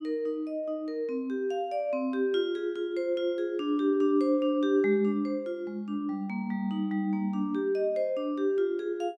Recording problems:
none

